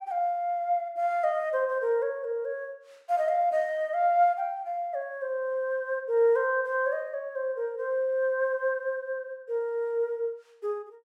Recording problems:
none

